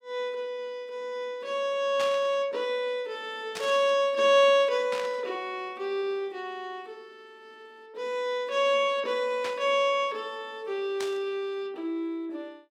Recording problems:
static burst; 5 times, first at 2 s; peak -4 dB vs average level

